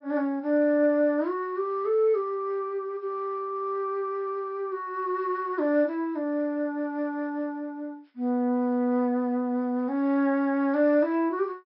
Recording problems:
treble cut off; nothing above 5.4 kHz

